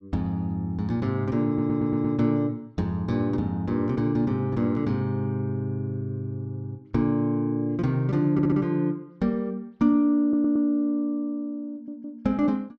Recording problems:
audio stuttering; 4 times, first at 1.5 s

